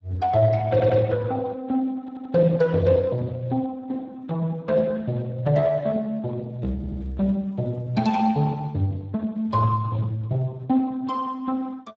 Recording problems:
lossy compression; Speex, log-spectral distance 2 dB
stutter; at 0.5 s, at 2 s and at 7 s

